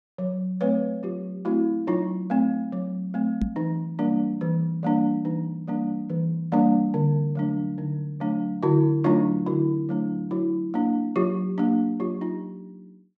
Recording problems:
microphone thump; at 3.5 s; peak +2 dB vs average level

